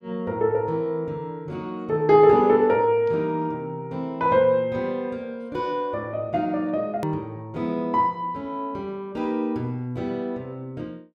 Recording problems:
click at an edit; at 7 s

